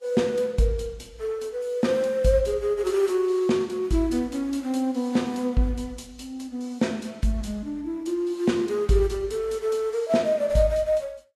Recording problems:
lossy compression; Vorbis, log-spectral distance 2 dB, nothing above 12.7 kHz

